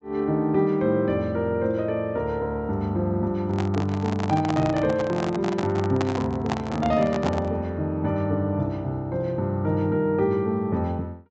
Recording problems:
treble missing; nothing above 8 kHz
microphone handling noise; from 3.5 to 7.5 s; peak +1 dB vs average level

